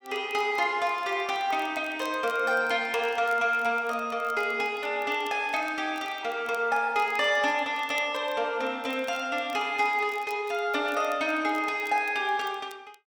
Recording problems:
crackling; vinyl, SNR 26 dB

